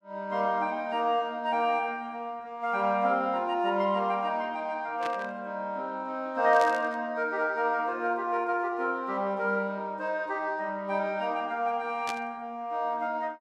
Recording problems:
static burst; at 5 s, at 6.5 s and at 12 s; peak -3 dB vs average level

